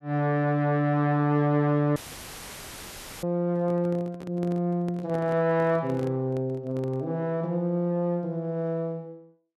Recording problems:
dropout; at 2 s for 1.5 s; filled with static
microphone handling noise; from 3.5 to 7 s; peak -10 dB vs average level

